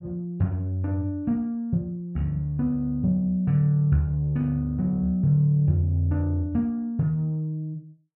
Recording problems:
none

